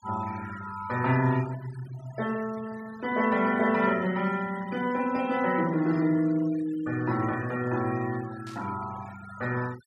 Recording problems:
denoising artefacts; signal-to-artefact ratio 17 dB
static burst; at 8.5 s; peak -16 dB vs average level

